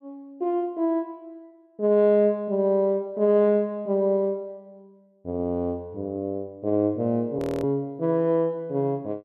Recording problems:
audio freezing; at 7.5 s

